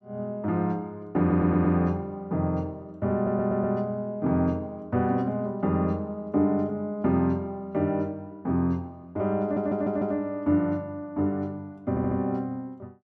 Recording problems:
stutter; 4 times, first at 1 s

